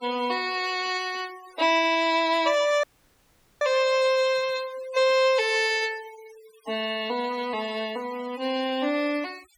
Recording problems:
noise reduction artefacts; signal-to-artefact ratio 19 dB
dropout; at 3 s for 1 s

